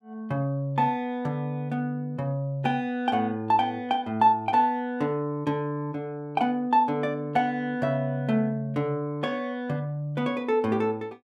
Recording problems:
none

